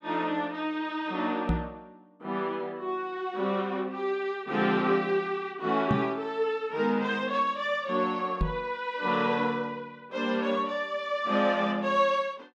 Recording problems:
microphone bump; at 1.5 s, at 6 s and at 8.5 s; peak +5 dB vs average level

